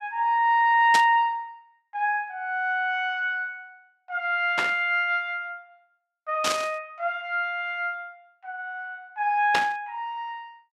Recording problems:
static burst; 4 times, first at 1 s; peak +3 dB vs average level

